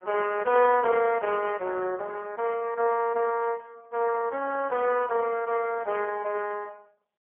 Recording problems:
phone line; 300 Hz to 3 kHz, AMR-NB, then MP3

